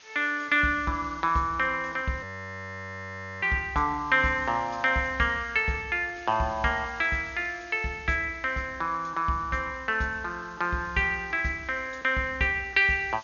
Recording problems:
treble missing; nothing above 6.7 kHz
lossy codec; G.722, log-spectral distance 6 dB
hiss; slope +1 dB per octave, SNR 25 dB
audio freezing; at 2 s for 1 s

